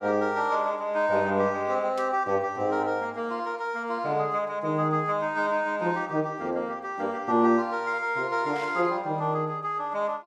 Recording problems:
burst of static; at 2 s and at 8.5 s; peak -12 dB vs average level

